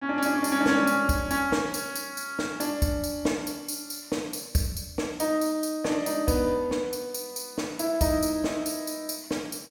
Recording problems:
none

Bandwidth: 18 kHz